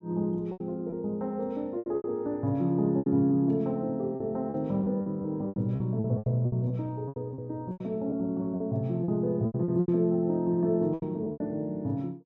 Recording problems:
packet loss; 12% of the sound replaced, filled with repeated pitch periods

